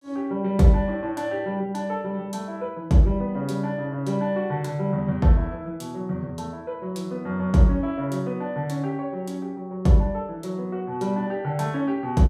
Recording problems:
none

